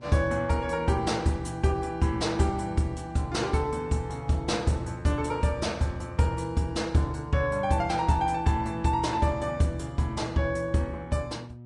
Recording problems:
codec artefacts; Vorbis, log-spectral distance 2 dB, nothing above 10.1 kHz
electrical hum; 60 Hz, harmonics up to 600 Hz, SNR 20 dB

